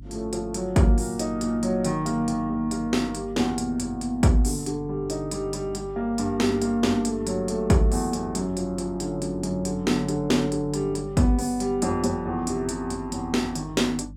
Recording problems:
hum; 50 Hz, harmonics up to 300 Hz, SNR 17 dB

